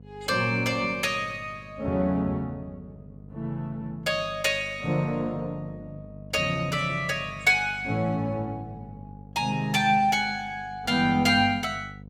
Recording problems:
hum; 50 Hz, harmonics up to 700 Hz, SNR 19 dB

